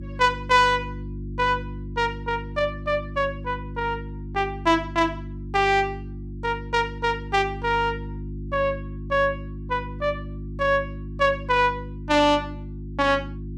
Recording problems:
hum; 50 Hz, harmonics up to 350 Hz, SNR 11 dB

